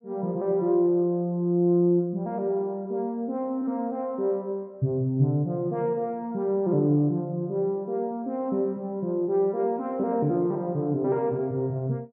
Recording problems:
treble cut off; nothing above 7.7 kHz

